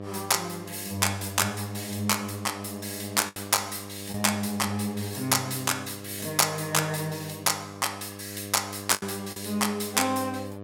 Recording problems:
hum; 50 Hz, harmonics up to 1.3 kHz, SNR 13 dB
lost packets; 2% of the sound replaced, filled with the last packet

